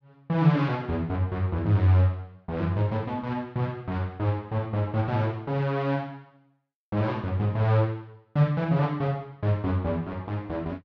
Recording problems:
none

